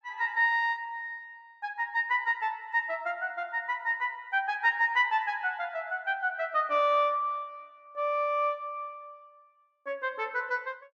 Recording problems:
none

